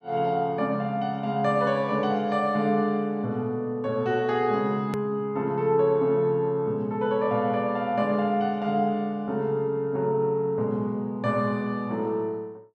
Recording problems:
edit click; at 5 s

